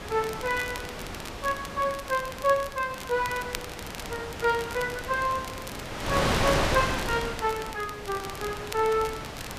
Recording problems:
hiss; SNR 24 dB
wind noise; below 2.3 kHz, SNR 4 dB
crackling; vinyl, SNR 13 dB

